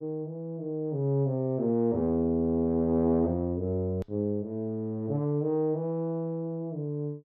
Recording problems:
edit click; at 4 s

